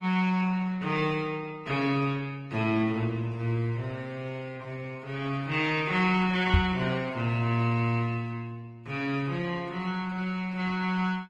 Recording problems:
lossy codec; Opus, then Opus, log-spectral distance 3 dB
microphone bump; at 6.5 s; peak +8 dB vs average level

